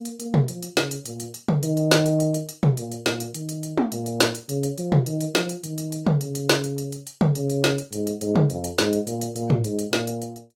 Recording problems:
lossy codec; AAC, log-spectral distance 3 dB, nothing above 16.5 kHz

